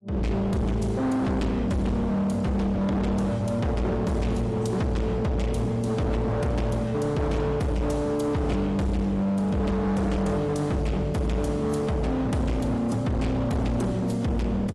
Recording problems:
lossy compression; AAC, log-spectral distance 2 dB
distortion; hard clipping, signal-to-distortion ratio 6 dB

